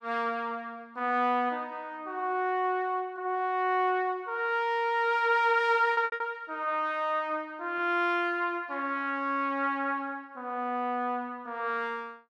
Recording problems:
lost packets; 1.6% of the sound replaced, filled with repeated pitch periods

